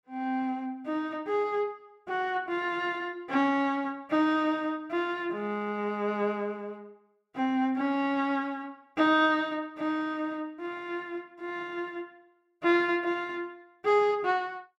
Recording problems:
none

